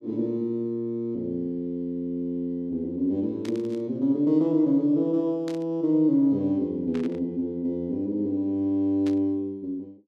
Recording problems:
static burst; 4 times, first at 3.5 s; peak -12 dB vs average level

